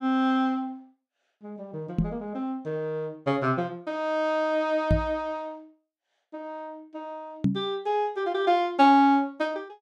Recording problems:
microphone thump; at 2 s, at 5 s and at 7.5 s; peak +5 dB vs average level

